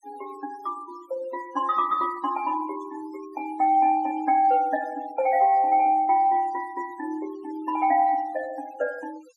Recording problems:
noise reduction artefacts; signal-to-artefact ratio 24 dB

